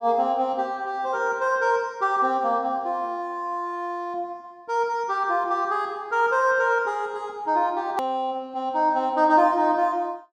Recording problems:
hard cut with a click; at 8 s

